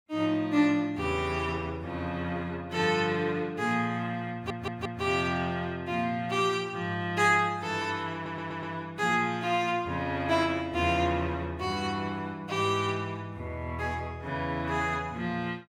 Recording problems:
audio stuttering; at 4.5 s and at 8 s

